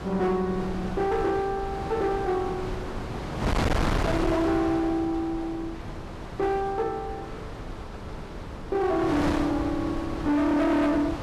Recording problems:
distorted audio; hard clipping, signal-to-distortion ratio 7 dB
wind noise; below 810 Hz, SNR 6 dB

